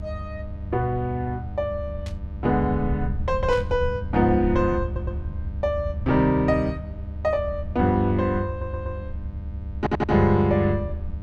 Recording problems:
electrical hum; 50 Hz, harmonics up to 1.2 kHz, SNR 17 dB
rumble; below 82 Hz, SNR 9 dB
burst of static; at 2 s and at 3.5 s; peak -12 dB vs average level
audio stuttering; at 5 s, at 8.5 s and at 10 s

